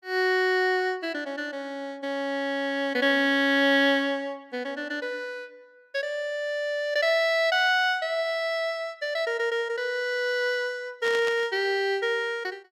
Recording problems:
static burst; at 11 s; peak -6 dB vs average level

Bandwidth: 16.5 kHz